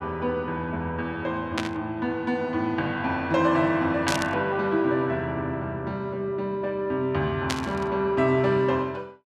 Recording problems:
burst of static; at 1.5 s, at 4 s and at 7.5 s; peak +2 dB vs average level

